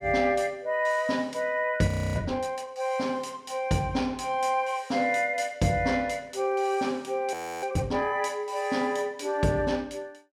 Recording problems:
frozen audio; at 2 s and at 7.5 s

